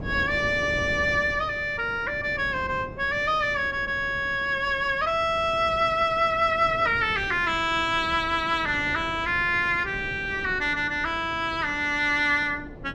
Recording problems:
wind on the microphone; below 380 Hz, SNR 16 dB

